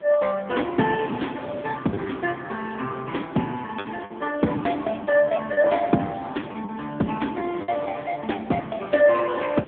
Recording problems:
phone line; 150 Hz to 3.5 kHz, AMR-NB
wind on the microphone; below 870 Hz, SNR 16 dB
packet loss; 6% of the sound replaced, filled with the last packet

